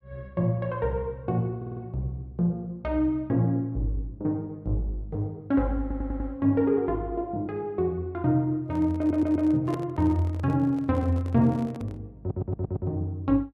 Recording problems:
stutter; 4 times, first at 1.5 s
microphone handling noise; from 8.5 to 12 s; peak -5 dB vs average level

